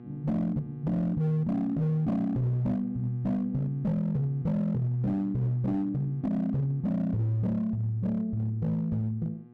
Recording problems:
distorted audio; hard clipping, signal-to-distortion ratio 12 dB
hum; 60 Hz, harmonics up to 1.2 kHz, SNR 18 dB

